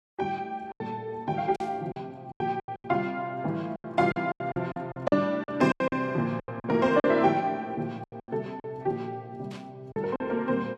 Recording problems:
codec artefacts; Vorbis, log-spectral distance 2 dB, nothing above 11.6 kHz
lost packets; 13% of the sound replaced, filled with silence
burst of static; at 1.5 s and at 9.5 s; peak -15 dB vs average level

